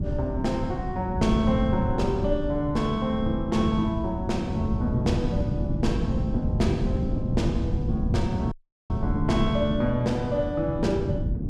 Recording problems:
wind noise; below 190 Hz, SNR 2 dB
audio cutting out; at 8.5 s

